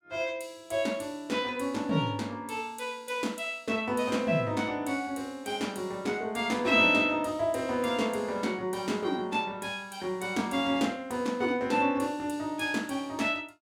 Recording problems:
none

